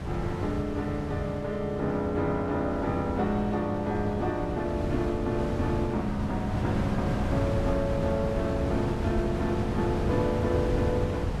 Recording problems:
wind on the microphone; below 310 Hz, SNR 3 dB

